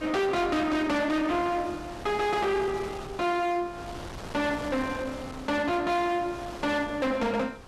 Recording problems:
distortion; hard clipping, uneven, signal-to-distortion ratio 5 dB
wind noise; below 1.5 kHz, SNR 14 dB

